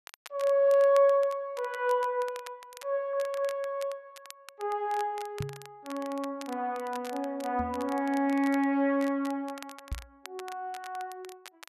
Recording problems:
crackle; vinyl, SNR 20 dB
audio stuttering; at 3 s
knock on the microphone; at 5.5 s, at 7.5 s and at 10 s; peak -2 dB vs average level

